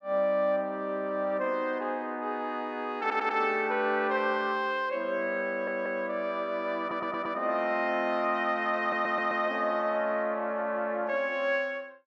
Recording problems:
stutter; 4 times, first at 3 s

